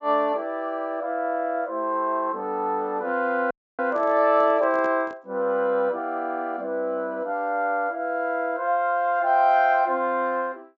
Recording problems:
treble cut off; nothing above 8 kHz
microphone handling noise; from 3.5 to 5 s; peak -12 dB vs average level
audio cutting out; at 3.5 s

